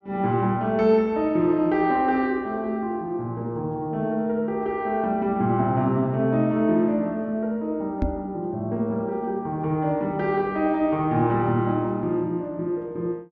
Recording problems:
microphone thump; at 8 s; peak +2 dB vs average level

